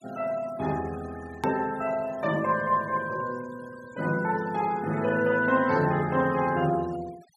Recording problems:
denoising artefacts; signal-to-artefact ratio 21 dB
edit click; at 1.5 s

